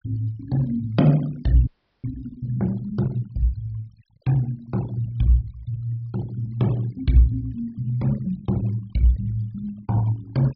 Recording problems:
treble cut off; nothing above 5.5 kHz
denoising artefacts; signal-to-artefact ratio 21 dB
audio freezing; at 1.5 s

